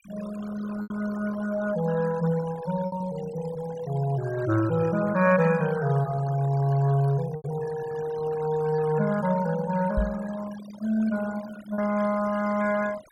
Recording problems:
noise reduction artefacts; signal-to-artefact ratio 16 dB
lost packets; 3% of the sound replaced, filled with repeated pitch periods
microphone thump; at 10 s; peak +2 dB vs average level

